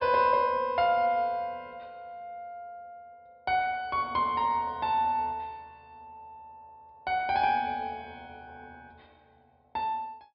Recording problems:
low-pass filter; nothing above 5.5 kHz

